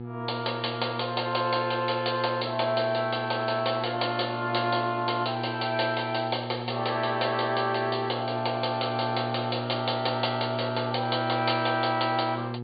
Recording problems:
low-pass filter; nothing above 4.7 kHz
electrical hum; 60 Hz, harmonics up to 960 Hz, SNR 9 dB

